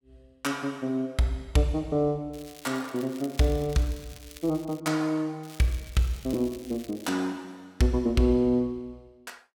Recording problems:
crackling; from 2.5 to 5 s and from 5.5 to 7 s; loose cable, SNR 20 dB

